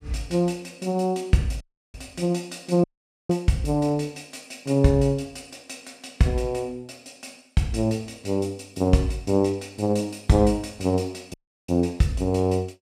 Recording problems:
dropout; at 1.5 s, at 3 s and at 11 s

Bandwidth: 15 kHz